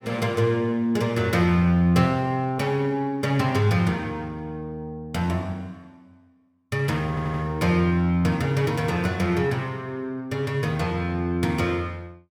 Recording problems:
stutter; at 7 s

